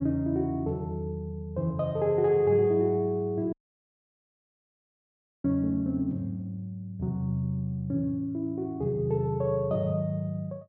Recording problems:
dropout; at 3.5 s for 2 s

